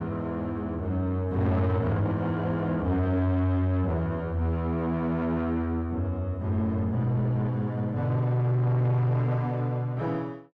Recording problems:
distorted audio; soft clipping, signal-to-distortion ratio 11 dB

